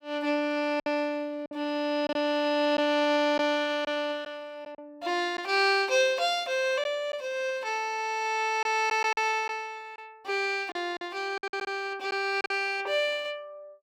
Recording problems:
lost packets; 5% of the sound replaced, filled with silence

